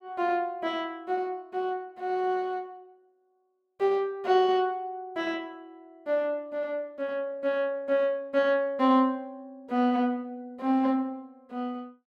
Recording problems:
none

